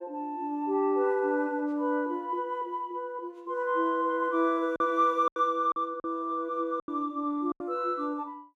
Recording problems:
lost packets; 4% of the sound replaced, filled with silence

